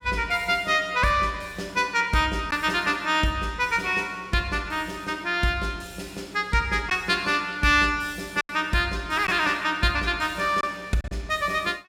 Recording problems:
lost packets; 1.6% of the sound replaced, filled with silence

